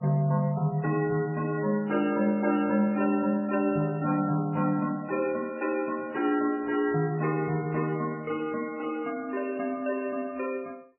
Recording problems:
lossy codec; MP3, log-spectral distance 2 dB, nothing above 2.4 kHz

